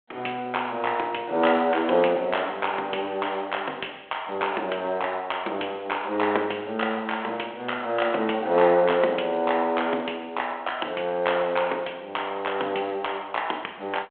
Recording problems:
phone line; 300 Hz to 3.4 kHz, G.726

